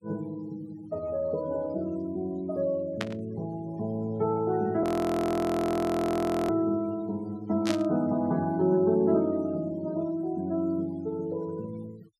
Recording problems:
noise reduction artefacts; signal-to-artefact ratio 24 dB
burst of static; at 3 s and at 7.5 s; peak 0 dB vs average level
audio freezing; at 5 s for 1.5 s

